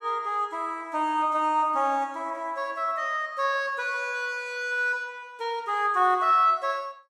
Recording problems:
none

